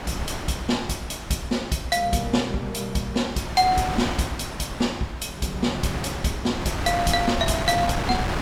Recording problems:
wind on the microphone; below 1.5 kHz, SNR 6 dB

